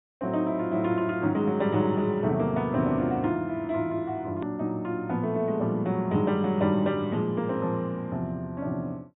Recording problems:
treble missing; nothing above 4 kHz
click at an edit; at 4.5 s

